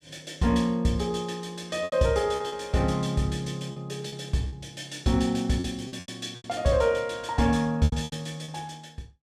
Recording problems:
lost packets; 8% of the sound replaced, filled with repeated pitch periods

